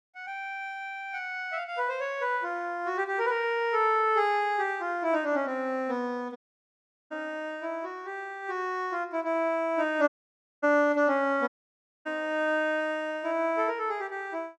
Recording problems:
dropout; at 6.5 s for 0.5 s, at 10 s for 0.5 s and at 11 s for 0.5 s

